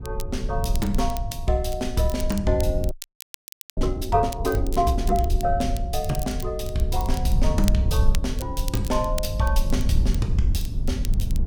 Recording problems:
low-frequency rumble; below 72 Hz, SNR 1 dB
crackle; vinyl, SNR 14 dB
frozen audio; at 3 s for 1 s

